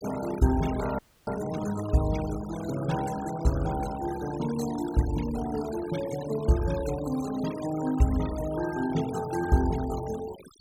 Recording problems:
noise reduction artefacts; signal-to-artefact ratio 14 dB
frozen audio; at 1 s

